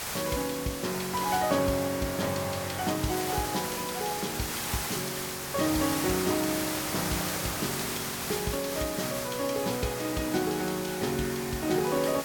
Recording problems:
background hiss; slope -1 dB per octave, SNR 3 dB

